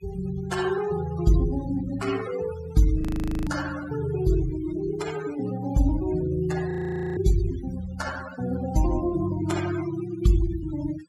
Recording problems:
noise reduction artefacts; signal-to-artefact ratio 13 dB
audio freezing; at 3 s and at 6.5 s

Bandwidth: 14.5 kHz